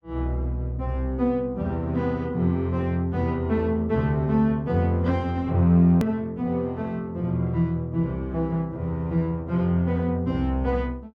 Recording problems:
hard cut with a click; at 6 s

